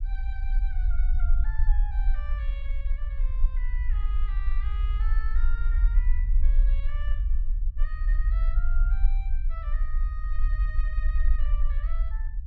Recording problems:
low-frequency rumble; below 44 Hz, strongest tone 22 Hz, SNR -17 dB

